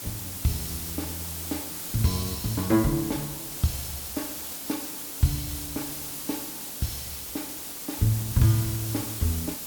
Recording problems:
background hiss; SNR 4 dB

